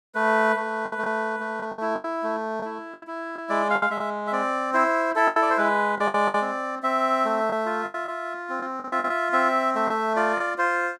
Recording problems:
lost packets; 9% of the sound replaced, filled with the last packet

